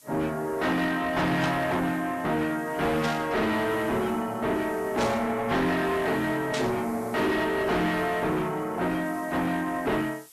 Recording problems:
codec artefacts; AAC, log-spectral distance 2 dB
distorted audio; soft clipping, signal-to-distortion ratio 7 dB
hiss; SNR 23 dB
burst of static; 4 times, first at 1.5 s; peak -2 dB vs average level

